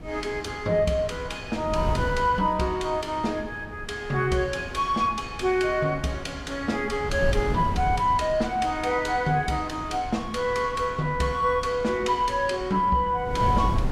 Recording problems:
wind on the microphone; below 180 Hz, SNR 10 dB

